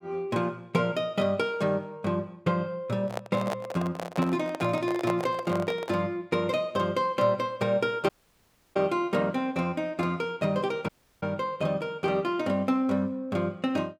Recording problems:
microphone handling noise; from 3 to 6 s; peak +1 dB vs average level
dropout; at 8 s for 0.5 s and at 11 s

